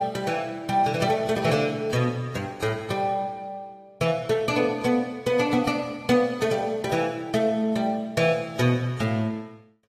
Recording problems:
lossy codec; AAC, log-spectral distance 2 dB, nothing above 14.7 kHz

